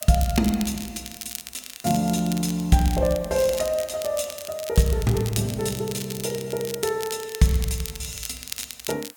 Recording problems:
background hiss; SNR 25 dB
crackle; vinyl, SNR 11 dB

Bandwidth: 18 kHz